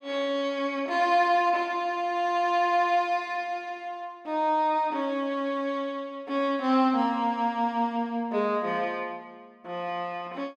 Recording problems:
none

